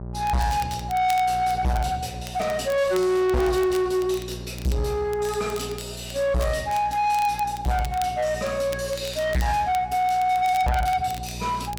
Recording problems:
distortion; soft clipping, signal-to-distortion ratio 7 dB
electrical hum; 60 Hz, harmonics up to 840 Hz, SNR 15 dB
crackle; vinyl, SNR 19 dB

